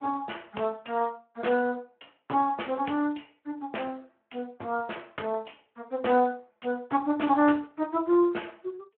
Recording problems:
phone line; 260 Hz to 3 kHz, Speex

